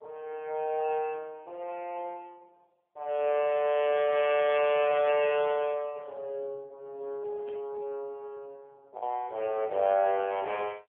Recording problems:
telephone audio; 340 Hz to 3.3 kHz, AMR-NB
packet loss; 0.4% of the sound replaced, filled with the last packet
burst of static; at 7.5 s; peak -20 dB vs average level

